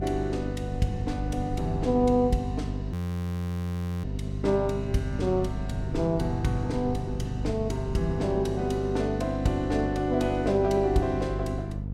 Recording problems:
mains hum; 50 Hz, harmonics up to 500 Hz, SNR 5 dB
low-frequency rumble; below 160 Hz, SNR 13 dB
audio freezing; at 3 s for 1 s

